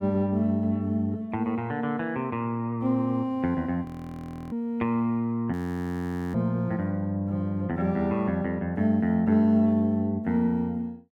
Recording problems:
frozen audio; at 4 s for 0.5 s and at 5.5 s for 1 s

